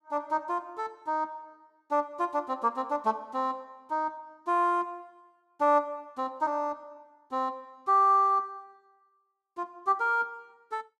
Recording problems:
none

